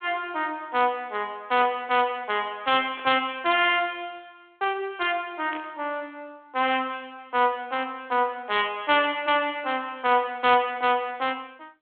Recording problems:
phone line; 260 Hz to 3.4 kHz, G.726
burst of static; 4 times, first at 1.5 s; peak -11 dB vs average level

